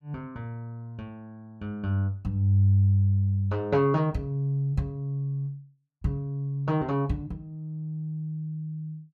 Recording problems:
none

